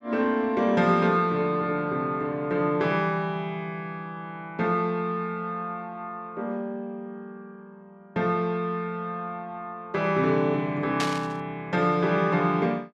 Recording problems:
static burst; at 11 s; peak +1 dB vs average level

